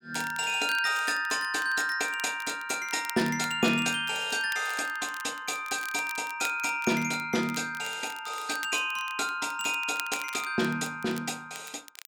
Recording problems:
crackle; vinyl, SNR 16 dB

